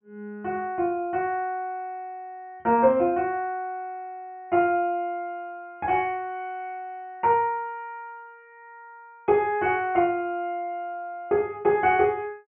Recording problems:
low-pass filter; nothing above 3.1 kHz

